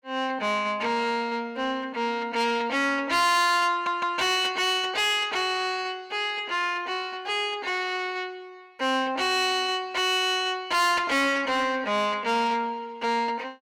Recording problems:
distorted audio; soft clipping, signal-to-distortion ratio 8 dB
audio stuttering; at 3.5 s

